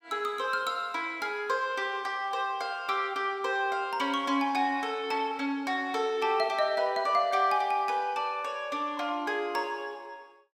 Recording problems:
none

